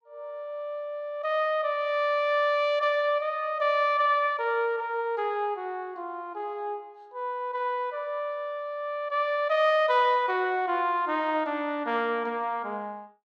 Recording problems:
none

